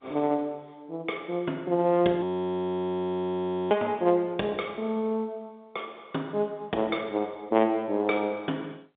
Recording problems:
phone line; 190 Hz to 3.7 kHz, G.711
frozen audio; at 2 s for 1.5 s

